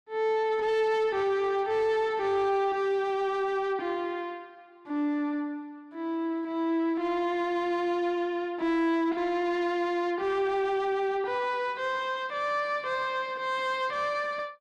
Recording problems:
distorted audio; soft clipping, signal-to-distortion ratio 11 dB

